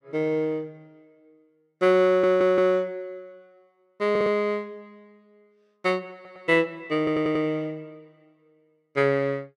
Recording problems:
audio stuttering; 4 times, first at 2 s

